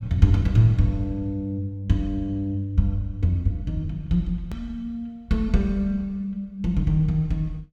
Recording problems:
click at an edit; at 4.5 s

